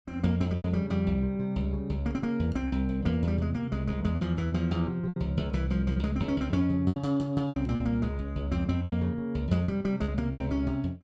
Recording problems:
lost packets; 7% of the sound replaced, filled with repeated pitch periods

